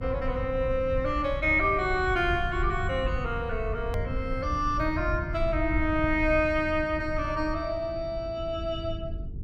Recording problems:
electrical hum; 50 Hz, harmonics up to 450 Hz, SNR 17 dB
low-frequency rumble; below 94 Hz, SNR 8 dB
hard cut with a click; at 4 s

